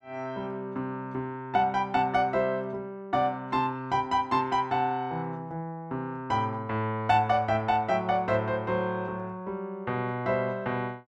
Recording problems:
none

